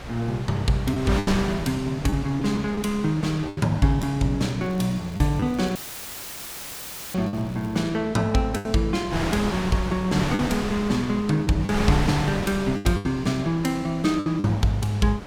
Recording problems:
hum; 60 Hz, harmonics up to 720 Hz, SNR 19 dB
wind on the microphone; below 1.5 kHz, SNR 9 dB
packet loss; 6% of the sound replaced, filled with the last packet
crackling; from 4.5 to 8 s; loose cable, SNR 28 dB
audio cutting out; at 6 s for 1.5 s; filled with static

